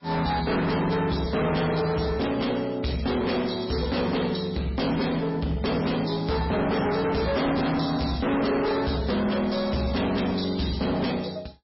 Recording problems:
lossy compression; MP3, log-spectral distance 6 dB, nothing above 5.5 kHz
distortion; soft clipping, signal-to-distortion ratio 6 dB

